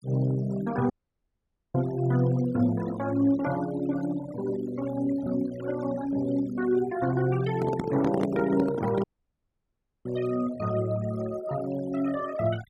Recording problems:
denoising artefacts; signal-to-artefact ratio 17 dB
dropout; at 1 s for 1 s and at 9 s for 1 s
handling noise; from 7.5 to 9 s; peak +2 dB vs average level

